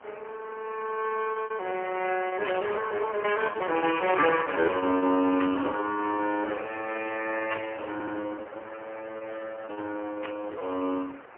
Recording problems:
telephone audio; 240 Hz to 3 kHz, AMR-NB, then MP3
hiss; SNR 17 dB
packet loss; 17% of the sound replaced, filled with repeated pitch periods
burst of static; 4 times, first at 2.5 s; peak +1 dB vs average level
stutter; at 8 s

